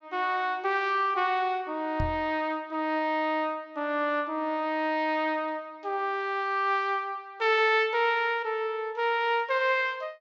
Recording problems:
treble cut off; nothing above 8 kHz
microphone bump; at 2 s; peak -1 dB vs average level

